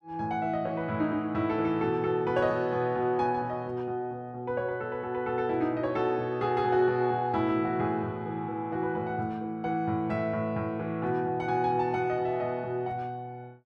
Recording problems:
none

